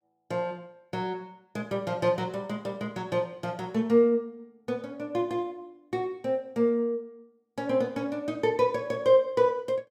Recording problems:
none

